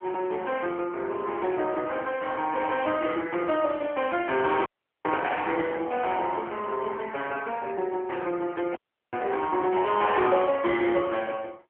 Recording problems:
telephone audio; 300 Hz to 3.2 kHz, AMR-NB
audio freezing; at 4.5 s and at 9 s

